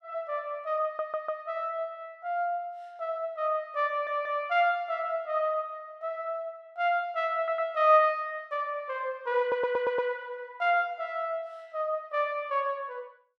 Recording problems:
audio stuttering; 4 times, first at 1 s

